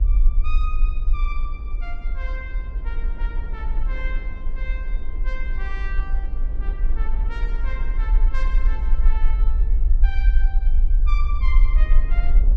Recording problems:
rumble; below 42 Hz, strongest tone 20 Hz, SNR -14 dB
wind on the microphone; below 390 Hz, SNR 6 dB

